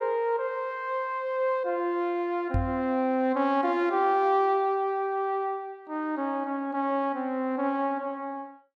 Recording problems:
knock on the microphone; at 2.5 s; peak +3 dB vs average level

